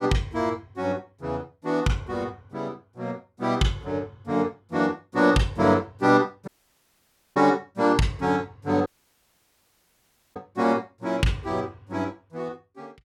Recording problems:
audio cutting out; at 6.5 s for 1 s and at 9 s for 1.5 s

